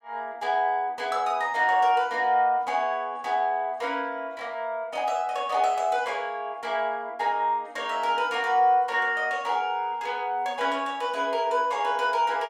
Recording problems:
none

